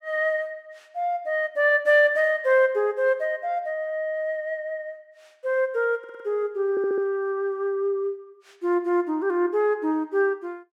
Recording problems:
audio stuttering; at 6 s and at 6.5 s

